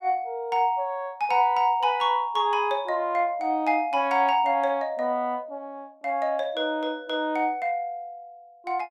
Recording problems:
none

